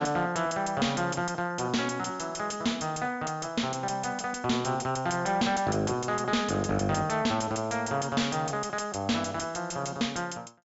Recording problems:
treble cut off; nothing above 8 kHz
distorted audio; soft clipping, signal-to-distortion ratio 8 dB

